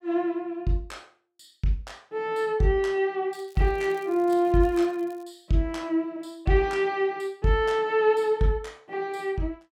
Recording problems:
crackling; from 3.5 to 5 s; loose cable, SNR 29 dB

